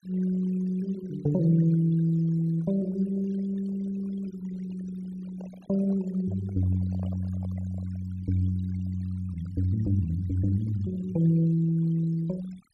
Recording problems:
noise reduction artefacts; signal-to-artefact ratio 23 dB
handling noise; from 5 to 8 s; peak -15 dB vs average level

